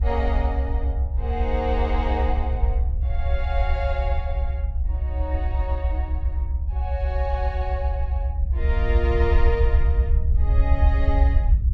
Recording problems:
rumble; below 68 Hz, SNR -6 dB

